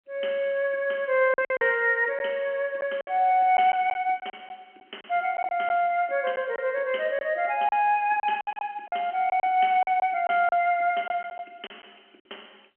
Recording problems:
telephone audio; 300 Hz to 3.2 kHz, G.711
lost packets; 8% of the sound replaced, filled with silence

